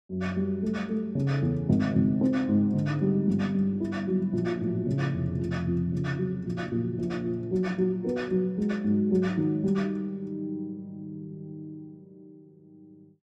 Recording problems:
none

